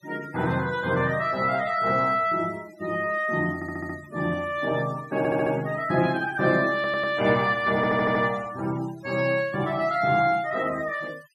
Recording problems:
noise reduction artefacts; signal-to-artefact ratio 21 dB
audio stuttering; 4 times, first at 3.5 s

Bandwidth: 14.5 kHz